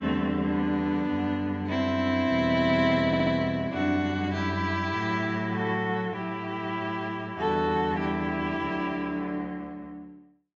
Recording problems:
lossy codec; AAC, log-spectral distance 2 dB
audio stuttering; at 3 s

